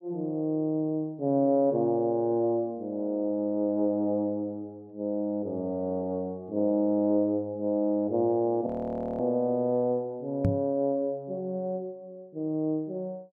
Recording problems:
frozen audio; at 8.5 s for 0.5 s
microphone bump; at 10 s; peak +6 dB vs average level

